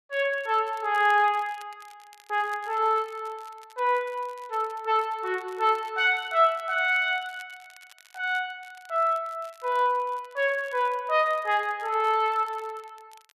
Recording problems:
crackling; vinyl, SNR 28 dB

